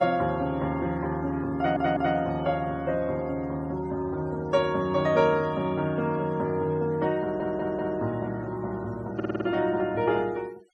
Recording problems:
denoising artefacts; signal-to-artefact ratio 26 dB
stutter; at 1.5 s, at 7 s and at 9 s

